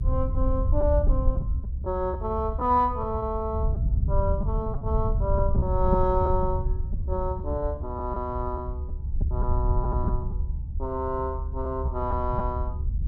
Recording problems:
rumble; below 82 Hz, SNR 0 dB
packet loss; 7% of the sound replaced, filled with repeated pitch periods

